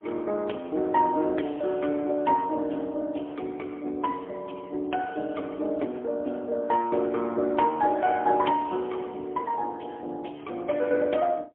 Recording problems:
phone line; 240 Hz to 3.3 kHz, AMR-NB, then MP3

